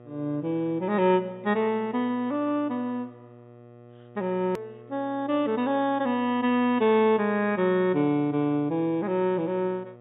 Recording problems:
low-pass filter; nothing above 4 kHz
hum; 60 Hz, harmonics up to 1.9 kHz, SNR 23 dB
hard cut with a click; at 4.5 s

